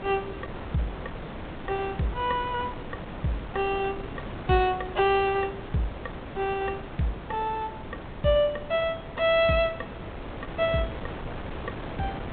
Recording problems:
low-pass filter; nothing above 4 kHz
wind on the microphone; below 860 Hz, SNR 11 dB

